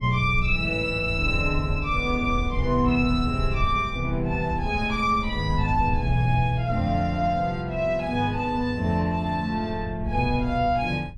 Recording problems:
wind on the microphone; below 84 Hz, SNR 9 dB

